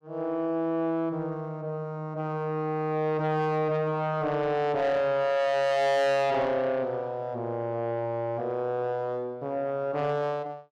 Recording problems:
distortion; soft clipping, signal-to-distortion ratio 6 dB

